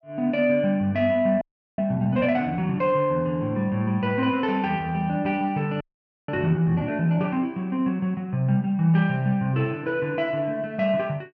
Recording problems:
audio freezing; at 1.5 s and at 6 s

